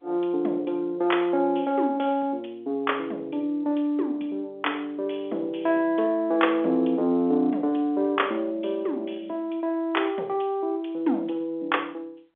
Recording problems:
telephone audio; 220 Hz to 3.5 kHz, G.711

